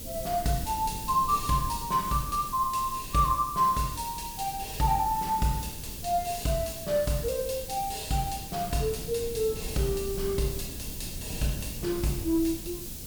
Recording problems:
background hiss; slope +4 dB per octave, SNR 10 dB
wind on the microphone; below 200 Hz, SNR 14 dB

